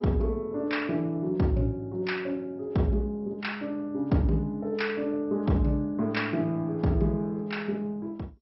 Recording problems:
lossy codec; MP2, log-spectral distance 2 dB, nothing above 5.5 kHz

